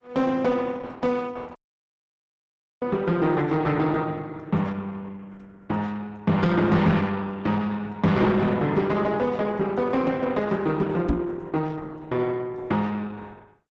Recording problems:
lossy codec; Opus, log-spectral distance 3 dB
distortion; soft clipping, signal-to-distortion ratio 12 dB
dropout; at 1.5 s for 1.5 s
microphone thump; at 11 s; peak +5 dB vs average level

